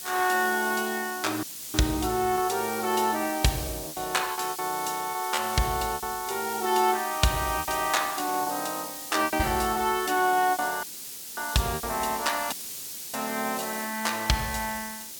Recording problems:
hiss; SNR 8 dB
packet loss; 6% of the sound replaced, filled with repeated pitch periods
dropout; at 1.5 s, at 11 s for 0.5 s and at 13 s for 0.5 s

